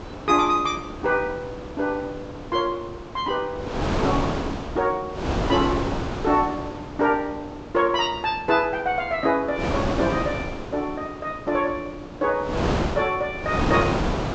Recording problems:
treble cut off; nothing above 8 kHz
mains hum; 60 Hz, harmonics up to 3 kHz, SNR 24 dB
wind noise; below 910 Hz, SNR 4 dB

